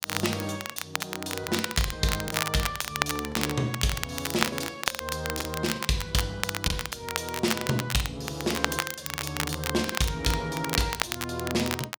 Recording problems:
crackle; vinyl, SNR 2 dB
lost packets; 4% of the sound replaced, filled with the last packet

